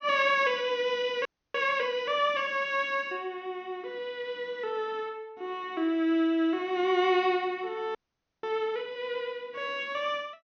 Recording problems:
treble cut off; nothing above 6.5 kHz
audio freezing; at 1.5 s and at 8 s

